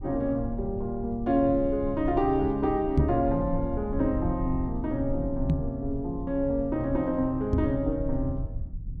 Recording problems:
low-frequency rumble; below 90 Hz, SNR 9 dB
microphone thump; at 3 s, at 5.5 s and at 7.5 s; peak +7 dB vs average level

